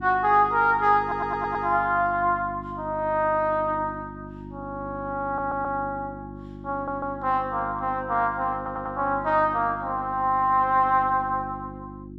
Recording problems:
hum; 50 Hz, harmonics up to 350 Hz, SNR 15 dB
audio stuttering; 4 times, first at 1 s

